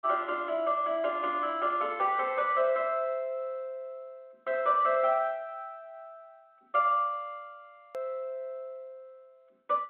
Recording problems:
phone line; 300 Hz to 3.2 kHz, G.726
edit click; at 8 s

